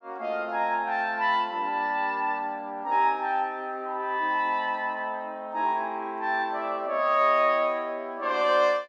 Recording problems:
none

